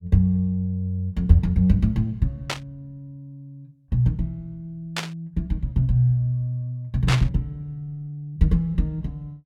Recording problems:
burst of static; at 2.5 s, at 5 s and at 7 s; peak +2 dB vs average level

